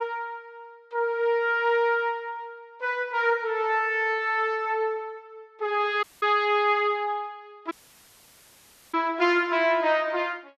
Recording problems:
dropout; at 6 s and at 7.5 s for 1 s

